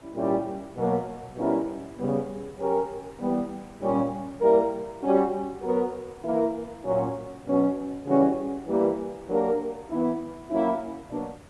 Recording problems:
lossy codec; AAC, log-spectral distance 2 dB
hiss; slope -6 dB per octave, SNR 23 dB

